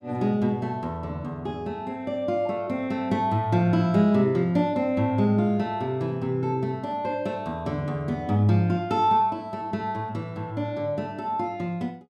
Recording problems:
none

